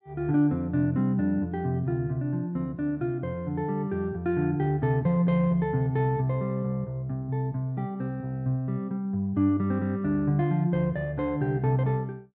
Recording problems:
none

